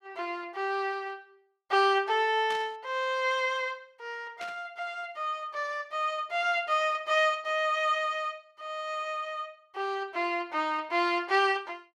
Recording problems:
static burst; at 2.5 s and at 4.5 s; peak -8 dB vs average level

